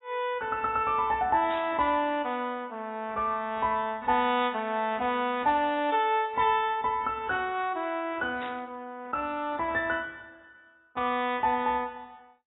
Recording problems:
codec artefacts; AAC, log-spectral distance 2 dB, nothing above 3.7 kHz
static burst; at 1.5 s and at 8.5 s; peak -10 dB vs average level

